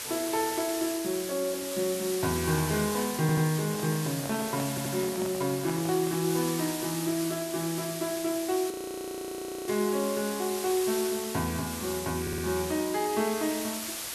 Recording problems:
hiss; slope 0 dB per octave, SNR 6 dB
stutter; at 3 s, at 4.5 s and at 12 s
microphone handling noise; from 3.5 to 6.5 s; peak -5 dB vs average level
frozen audio; at 8.5 s for 1 s

